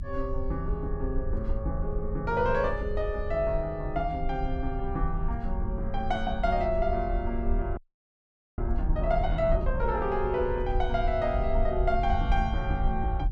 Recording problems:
rumble; below 60 Hz, SNR 3 dB
frozen audio; at 8 s for 1 s

